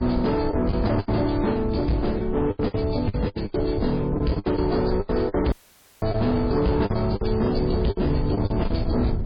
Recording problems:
codec artefacts; MP3, log-spectral distance 3 dB, nothing above 4.6 kHz
distortion; hard clipping, signal-to-distortion ratio 10 dB
low-frequency rumble; below 120 Hz, SNR 6 dB
packet loss; 11% of the sound replaced, filled with the last packet
audio cutting out; at 5.5 s for 0.5 s

